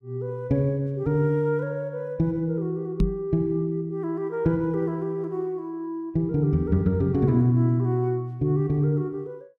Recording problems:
microphone bump; at 3 s; peak +6 dB vs average level

